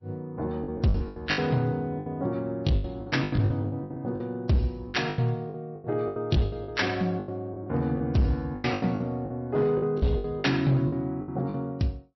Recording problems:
lossy compression; MP3, log-spectral distance 2 dB, nothing above 5.7 kHz
distortion; hard clipping, signal-to-distortion ratio 12 dB
lost packets; 16% of the sound replaced, filled with the last packet

